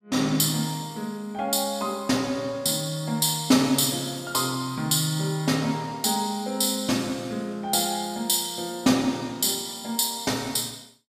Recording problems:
none

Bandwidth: 15 kHz